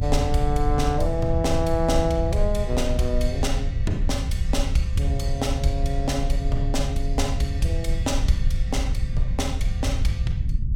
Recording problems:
low-frequency rumble; below 78 Hz, SNR 0 dB

